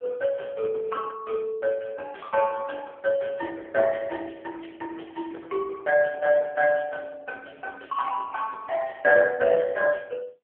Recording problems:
phone line; 340 Hz to 2.4 kHz, AMR-NB

